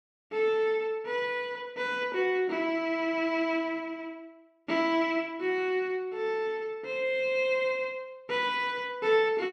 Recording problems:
none

